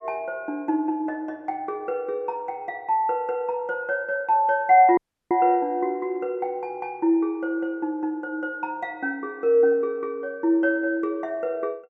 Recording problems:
dropout; at 5 s

